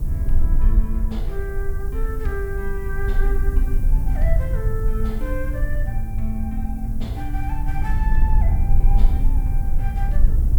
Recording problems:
background hiss; slope +4 dB per octave, SNR 18 dB
low-frequency rumble; below 48 Hz, strongest tone 22 Hz, SNR -8 dB

